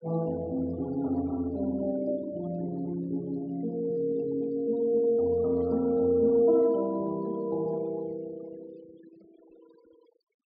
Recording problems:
treble cut off; nothing above 5 kHz
noise reduction artefacts; signal-to-artefact ratio 23 dB

